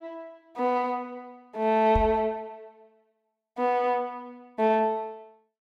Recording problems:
microphone bump; at 2 s; peak +1 dB vs average level

